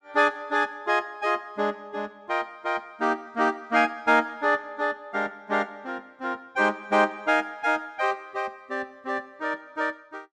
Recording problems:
none

